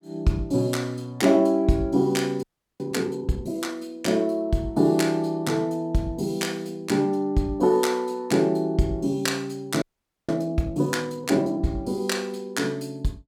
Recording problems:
audio freezing; at 2.5 s and at 10 s

